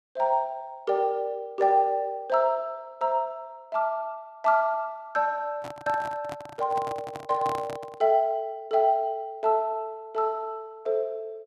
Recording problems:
microphone handling noise; from 5.5 to 8 s; peak -5 dB vs average level

